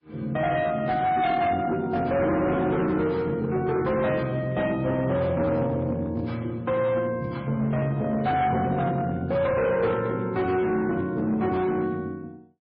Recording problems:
lossy codec; MP3, log-spectral distance 2 dB, nothing above 4.8 kHz
distortion; hard clipping, signal-to-distortion ratio 11 dB

